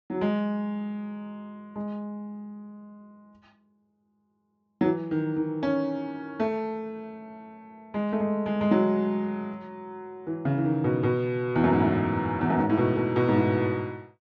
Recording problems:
low-pass filter; nothing above 8 kHz

